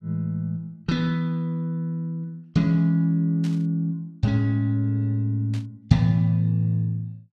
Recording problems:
static burst; at 3.5 s and at 5.5 s; peak -14 dB vs average level

